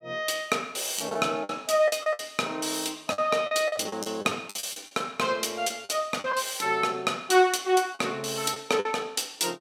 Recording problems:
lost packets; 9% of the sound replaced, filled with the last packet

